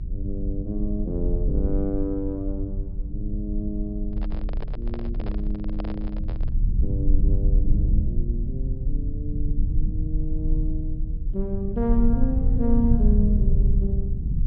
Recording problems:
treble missing; nothing above 5.5 kHz
rumble; below 66 Hz, SNR -4 dB
microphone handling noise; from 4 to 6.5 s; peak -2 dB vs average level

